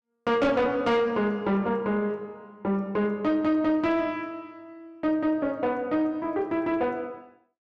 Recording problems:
distortion; soft clipping, signal-to-distortion ratio 12 dB

